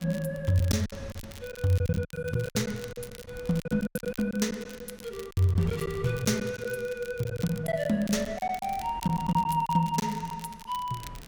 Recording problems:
wind noise; below 240 Hz, SNR 21 dB
crackle; vinyl, SNR 19 dB
packet loss; 12% of the sound replaced, filled with silence

